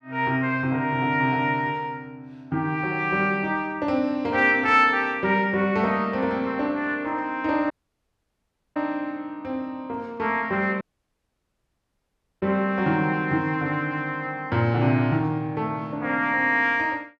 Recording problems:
dropout; at 7.5 s for 1 s and at 11 s for 1.5 s

